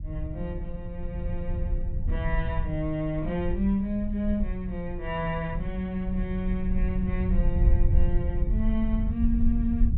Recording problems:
low-pass filter; nothing above 4 kHz
rumble; below 70 Hz, SNR 0 dB

